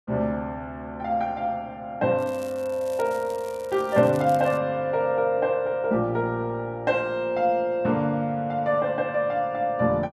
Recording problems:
crackle; from 2 to 4.5 s; loose cable, SNR 23 dB

